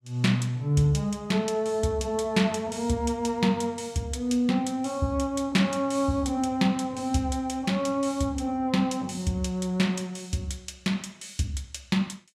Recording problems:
none

